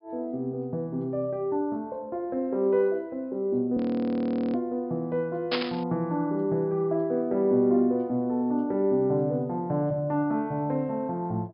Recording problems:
low-pass filter; nothing above 5.5 kHz
frozen audio; at 4 s for 1 s
static burst; at 5.5 s; peak +3 dB vs average level

